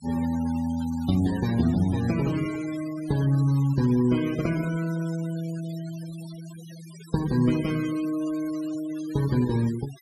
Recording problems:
noise reduction artefacts; signal-to-artefact ratio 18 dB

